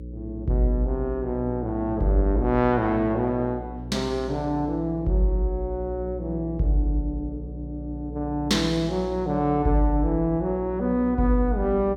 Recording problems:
hum; 60 Hz, harmonics up to 540 Hz, SNR 11 dB

